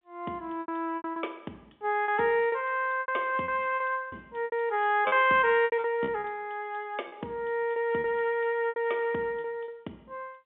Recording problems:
phone line; 190 Hz to 3.5 kHz, G.711
packet loss; 11% of the sound replaced, filled with repeated pitch periods

